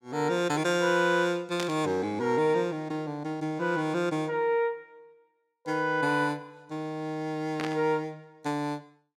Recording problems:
burst of static; at 1.5 s and at 7.5 s; peak -3 dB vs average level

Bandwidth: 17.5 kHz